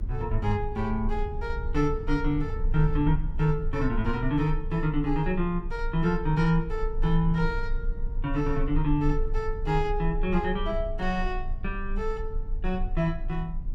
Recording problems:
rumble; below 40 Hz, strongest tone 24 Hz, SNR 6 dB

